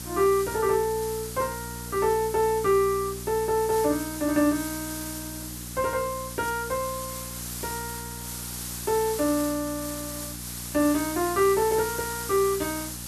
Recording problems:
hum; 60 Hz, harmonics up to 660 Hz, SNR 15 dB
background hiss; slope 0 dB per octave, SNR 9 dB

